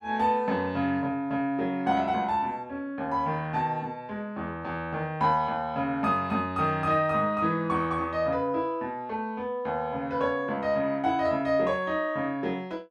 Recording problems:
none

